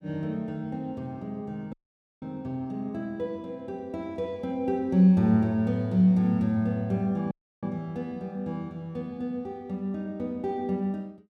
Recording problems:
dropout; at 1.5 s and at 7.5 s

